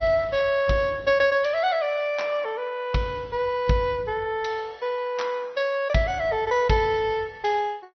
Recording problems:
low-pass filter; nothing above 5.8 kHz
codec artefacts; Opus, log-spectral distance 2 dB

